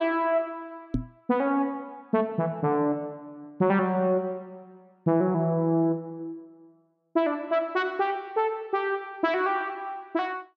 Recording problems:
microphone thump; at 1 s; peak +3 dB vs average level

